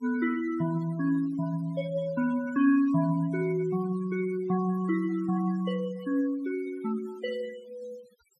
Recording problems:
noise reduction artefacts; signal-to-artefact ratio 20 dB

